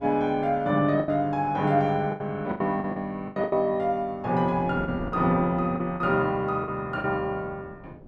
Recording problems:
wind on the microphone; below 380 Hz, SNR 18 dB
lost packets; 9% of the sound replaced, filled with the last packet

